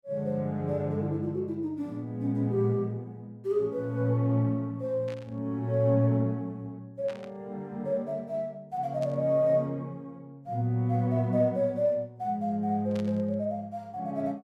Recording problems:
burst of static; 4 times, first at 5 s; peak -13 dB vs average level

